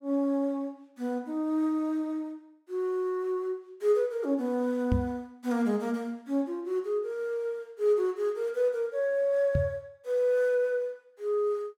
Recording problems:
knock on the microphone; at 5 s and at 9.5 s; peak +5 dB vs average level

